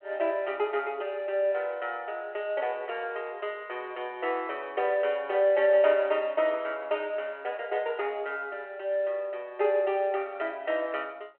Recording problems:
phone line; 320 Hz to 3.3 kHz, G.726

